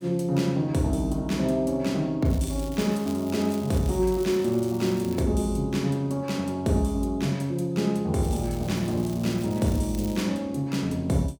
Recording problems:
crackling; from 2.5 to 5 s and from 8 to 10 s; loose cable, SNR 19 dB

